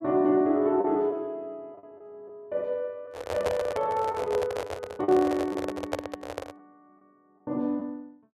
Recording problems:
lost packets; 4% of the sound replaced, filled with the last packet
handling noise; from 3 to 6.5 s; peak +2 dB vs average level

